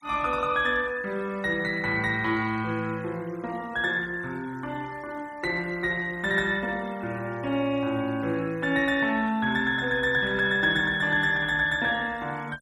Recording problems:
noise reduction artefacts; signal-to-artefact ratio 24 dB

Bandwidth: 13.5 kHz